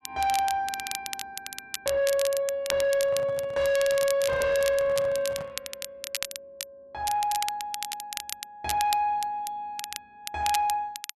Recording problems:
distortion; soft clipping, signal-to-distortion ratio 7 dB
crackling; vinyl, SNR 9 dB
handling noise; from 3 to 5.5 s; peak -5 dB vs average level

